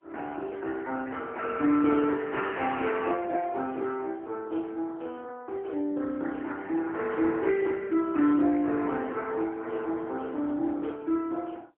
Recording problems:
phone line; 240 Hz to 3.4 kHz, AMR-NB, then MP3

